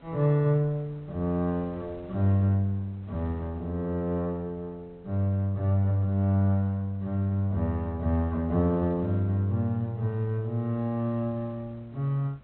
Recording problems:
treble cut off; nothing above 4.1 kHz
wind on the microphone; below 630 Hz, SNR 27 dB

